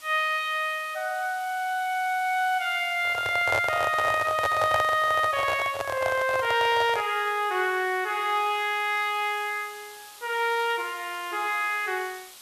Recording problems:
hiss; SNR 20 dB
handling noise; from 3 to 7 s; peak +2 dB vs average level

